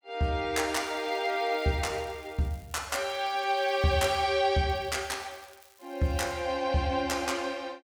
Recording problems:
crackle; from 0.5 to 4 s and from 4.5 to 6.5 s; loose cable, SNR 28 dB

